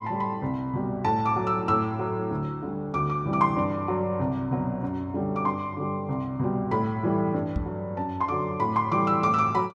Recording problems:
microphone thump; at 7.5 s; peak 0 dB vs average level

